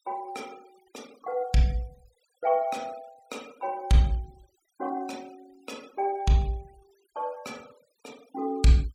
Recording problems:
denoising artefacts; signal-to-artefact ratio 26 dB

